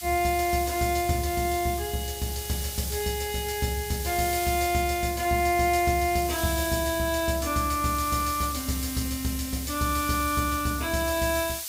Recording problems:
background hiss; slope +5 dB per octave, SNR 7 dB

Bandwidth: 15.5 kHz